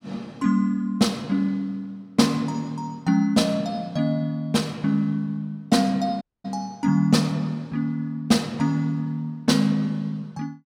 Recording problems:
audio cutting out; at 6 s

